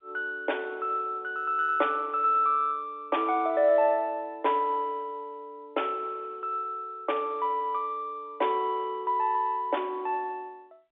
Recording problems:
telephone audio; 300 Hz to 3.6 kHz, G.711

